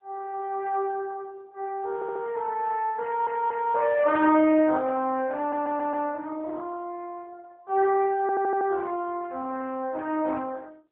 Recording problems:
phone line; 280 Hz to 3.4 kHz, AMR-NB
audio stuttering; 4 times, first at 2 s

